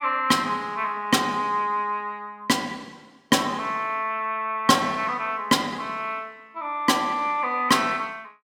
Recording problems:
none

